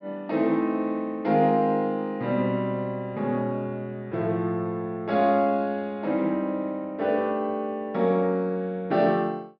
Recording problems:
treble cut off; nothing above 5.5 kHz

